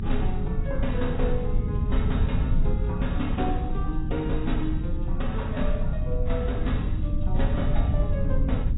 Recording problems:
lossy compression; AAC, log-spectral distance 2 dB, nothing above 3.8 kHz
low-frequency rumble; below 96 Hz, SNR -4 dB

